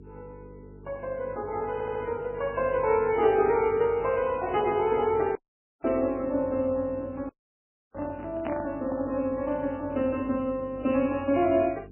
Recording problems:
codec artefacts; MP3, log-spectral distance 2 dB, nothing above 2.5 kHz
hum; 50 Hz, harmonics up to 450 Hz, SNR 20 dB
stutter; at 1.5 s
dropout; at 5.5 s and at 7.5 s for 0.5 s
handling noise; from 8 to 9 s; peak -4 dB vs average level

